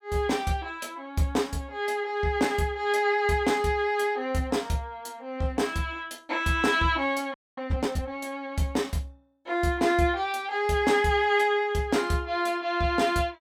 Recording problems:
audio freezing; at 7.5 s

